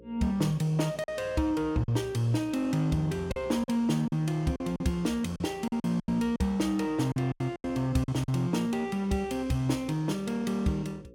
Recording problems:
hum; 60 Hz, harmonics up to 540 Hz, SNR 23 dB
lost packets; 7% of the sound replaced, filled with silence

